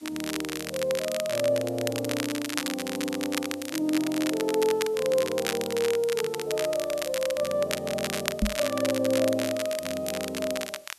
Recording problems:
hiss; slope +1 dB per octave, SNR 25 dB
crackle; vinyl, SNR 6 dB
microphone bump; at 8.5 s; peak +6 dB vs average level

